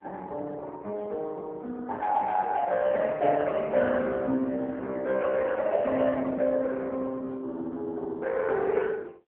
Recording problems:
phone line; 220 Hz to 3.4 kHz, AMR-NB

